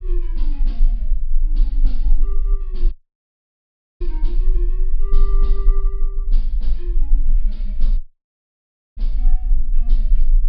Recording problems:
treble missing; nothing above 5.5 kHz
rumble; below 32 Hz, strongest tone 18 Hz, SNR -19 dB
audio cutting out; at 3 s for 1 s and at 8 s for 1 s

